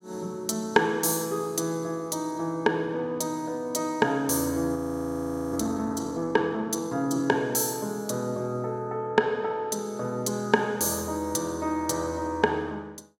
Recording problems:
frozen audio; at 5 s for 1 s

